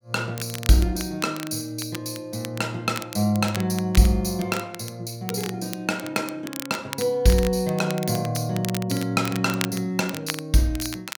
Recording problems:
crackle; vinyl, SNR 12 dB

